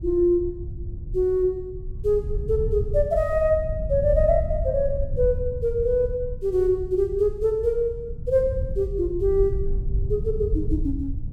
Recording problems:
low-frequency rumble; below 84 Hz, SNR 7 dB

